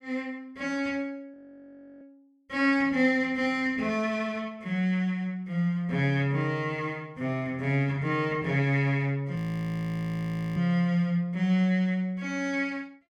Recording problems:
audio freezing; at 1.5 s for 0.5 s and at 9.5 s for 1 s

